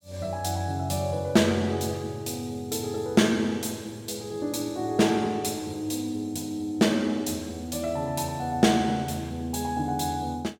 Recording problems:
none

